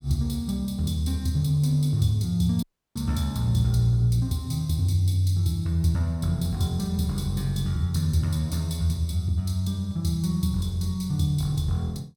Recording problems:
dropout; at 2.5 s

